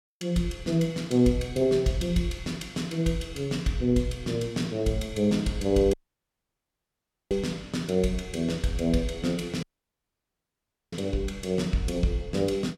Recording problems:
dropout; at 6 s for 1.5 s and at 9.5 s for 1.5 s

